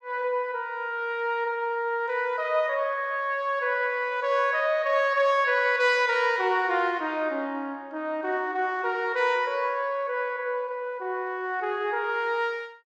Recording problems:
none

